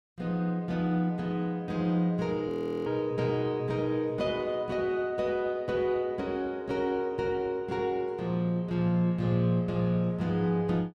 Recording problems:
frozen audio; at 2.5 s

